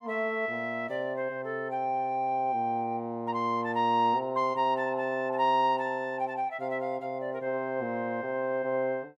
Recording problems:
none

